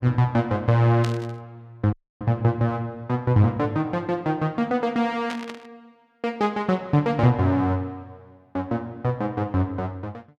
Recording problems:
static burst; at 1 s and at 5.5 s; peak -6 dB vs average level
audio cutting out; at 2 s

